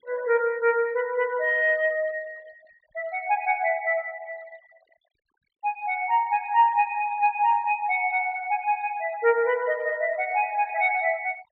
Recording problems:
treble missing; nothing above 4.6 kHz
denoising artefacts; signal-to-artefact ratio 27 dB

